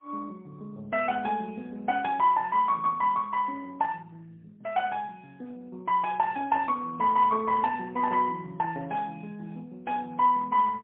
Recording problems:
phone line; 280 Hz to 3.4 kHz, AMR-NB, then MP3

